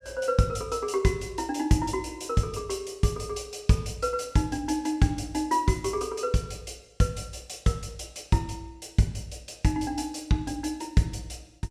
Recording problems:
none

